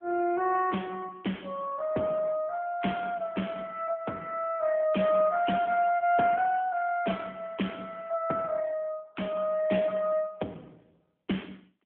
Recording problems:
telephone audio; 150 Hz to 3.3 kHz, AMR-NB

